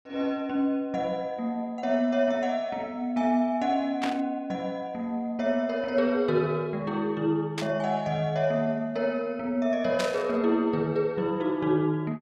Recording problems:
burst of static; at 4 s, at 7.5 s and at 10 s; peak 0 dB vs average level

